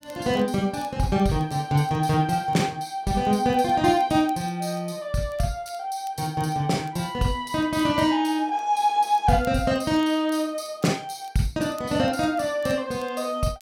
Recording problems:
crackling; vinyl, SNR 30 dB

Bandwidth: 16.5 kHz